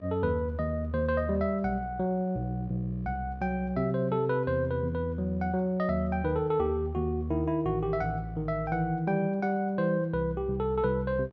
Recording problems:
hum; 60 Hz, harmonics up to 1.9 kHz, SNR 27 dB

